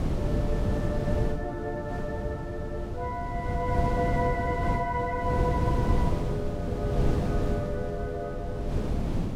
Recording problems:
wind on the microphone; below 230 Hz, SNR -3 dB

